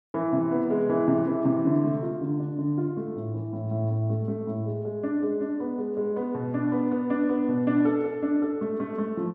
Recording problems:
none

